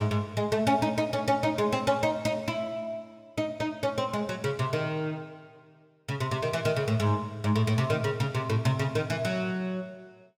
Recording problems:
none

